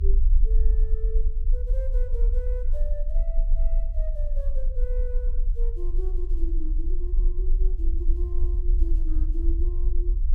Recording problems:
low-frequency rumble; below 40 Hz, strongest tone 22 Hz, SNR -15 dB

